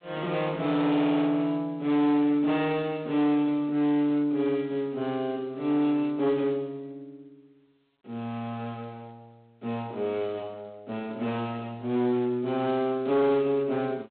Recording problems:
phone line; 190 Hz to 3.7 kHz, G.726
distorted audio; hard clipping, signal-to-distortion ratio 13 dB

